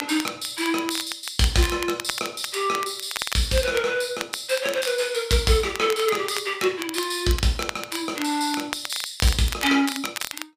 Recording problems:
crackle; vinyl, SNR 10 dB

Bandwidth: 15 kHz